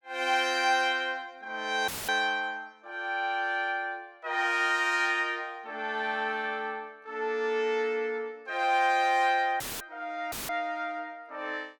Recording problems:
audio cutting out; at 2 s, at 9.5 s and at 10 s; filled with static

